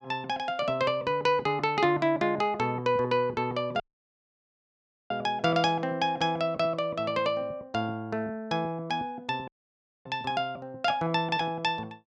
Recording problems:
audio cutting out; at 4 s for 1.5 s and at 9.5 s for 0.5 s

